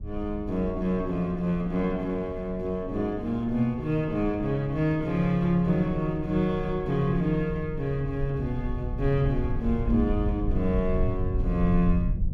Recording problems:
low-frequency rumble; below 90 Hz, SNR 7 dB

